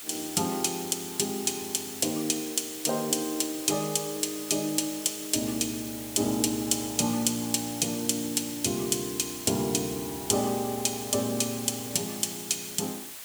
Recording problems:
hiss; slope +1 dB per octave, SNR 10 dB

